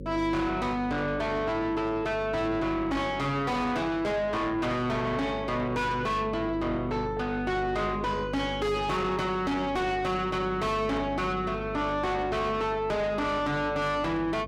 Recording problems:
distortion; soft clipping, signal-to-distortion ratio 6 dB
electrical hum; 50 Hz, harmonics up to 550 Hz, SNR 12 dB

